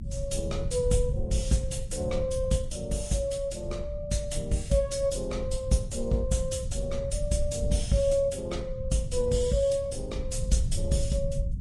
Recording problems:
lossy codec; Vorbis, then Vorbis, log-spectral distance 3 dB, nothing above 10.1 kHz
low-frequency rumble; below 96 Hz, SNR 6 dB

